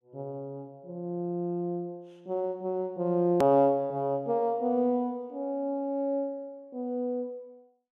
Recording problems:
click at an edit; at 3.5 s

